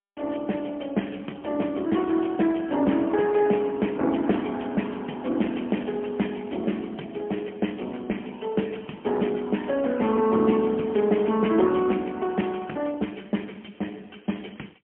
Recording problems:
telephone audio; 150 Hz to 3.2 kHz, AMR-NB, then MP3

